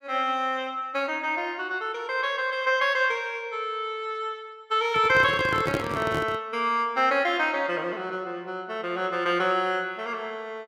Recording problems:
handling noise; from 5 to 6.5 s; peak +2 dB vs average level

